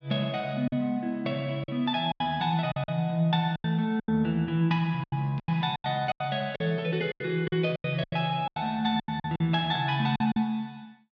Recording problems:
lost packets; 12% of the sound replaced, filled with silence

